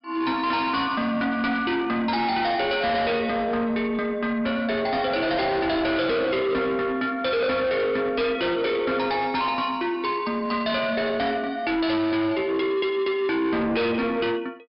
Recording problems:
treble missing; nothing above 5.5 kHz
distortion; soft clipping, signal-to-distortion ratio 7 dB

